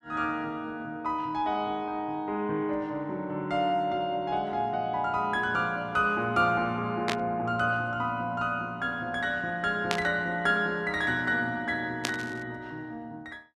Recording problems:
burst of static; at 7 s, at 10 s and at 12 s; peak +4 dB vs average level

